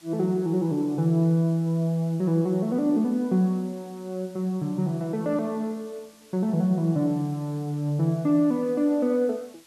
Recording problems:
hiss; slope +1 dB per octave, SNR 28 dB

